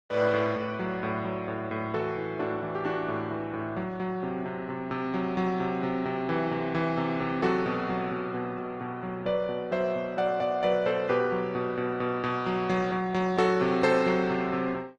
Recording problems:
codec artefacts; Opus, log-spectral distance 3 dB

